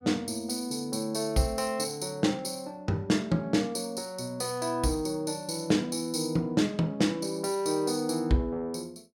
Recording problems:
none

